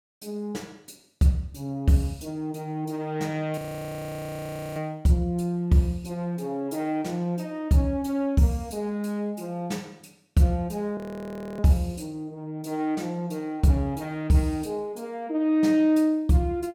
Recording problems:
audio freezing; at 3.5 s for 1 s and at 11 s for 0.5 s

